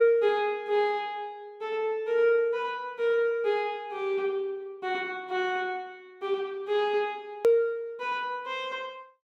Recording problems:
click at an edit; at 7.5 s

